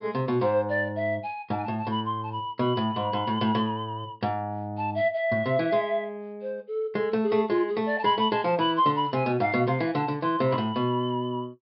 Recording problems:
low-pass filter; nothing above 5.3 kHz

